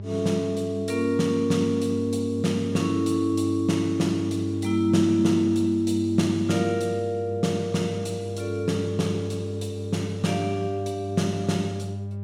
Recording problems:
mains hum; 50 Hz, harmonics up to 600 Hz, SNR 9 dB

